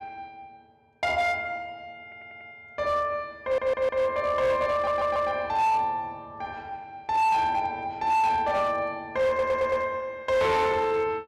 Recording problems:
distortion; hard clipping, signal-to-distortion ratio 11 dB
audio stuttering; 4 times, first at 2 s

